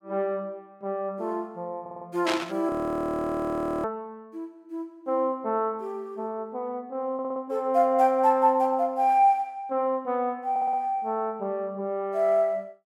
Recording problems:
stutter; at 2 s, at 7 s and at 11 s
static burst; at 2.5 s; peak +2 dB vs average level
frozen audio; at 2.5 s for 1 s

